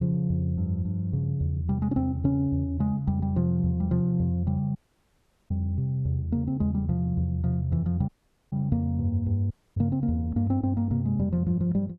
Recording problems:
audio cutting out; at 5 s for 1 s, at 8 s and at 9.5 s

